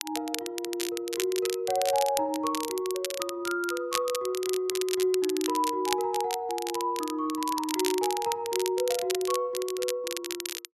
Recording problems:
crackle; vinyl, SNR 6 dB

